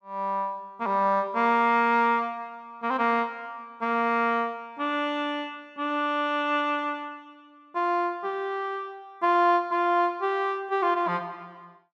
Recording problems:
none

